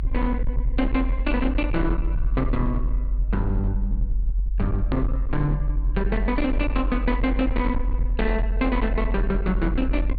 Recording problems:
treble cut off; nothing above 4.6 kHz
distortion; hard clipping, signal-to-distortion ratio 10 dB
rumble; below 48 Hz, strongest tone 44 Hz, SNR 0 dB
hard cut with a click; at 5 s

